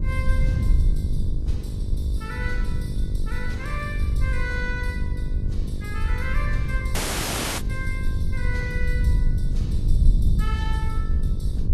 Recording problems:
lossy codec; Vorbis, log-spectral distance 2 dB, nothing above 12.7 kHz
hum; 50 Hz, harmonics up to 650 Hz, SNR 7 dB
rumble; below 80 Hz, SNR -8 dB
audio cutting out; at 7 s for 0.5 s

